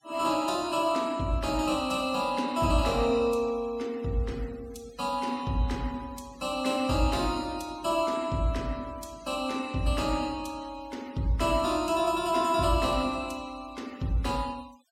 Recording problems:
denoising artefacts; signal-to-artefact ratio 23 dB

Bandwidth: 16 kHz